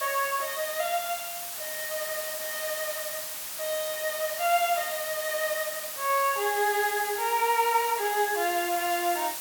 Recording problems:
background hiss; slope +2 dB per octave, SNR 5 dB

